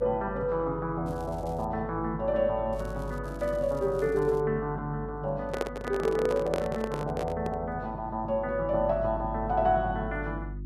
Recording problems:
electrical hum; 50 Hz, harmonics up to 350 Hz, SNR 12 dB
crackling; at 1 s, at 2.5 s and from 3 to 4.5 s; loose cable, SNR 27 dB
handling noise; from 5.5 to 7.5 s; peak +3 dB vs average level

